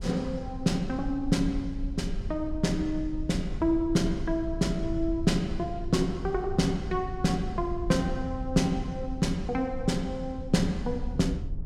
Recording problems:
low-frequency rumble; below 76 Hz, SNR 9 dB

